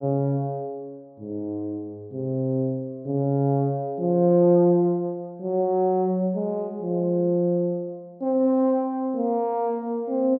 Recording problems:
none

